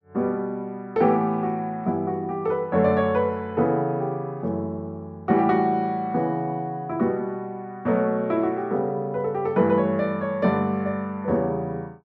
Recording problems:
none

